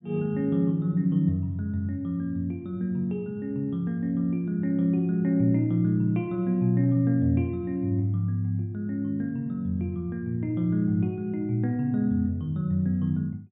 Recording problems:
low-pass filter; nothing above 4 kHz

